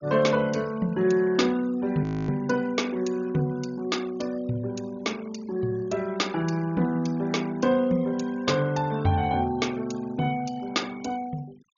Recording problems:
low-pass filter; nothing above 6.8 kHz
noise reduction artefacts; signal-to-artefact ratio 21 dB
audio freezing; at 2 s

